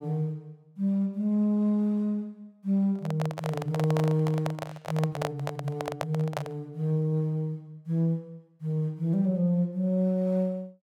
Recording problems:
microphone handling noise; from 3 to 6.5 s; peak +1 dB vs average level

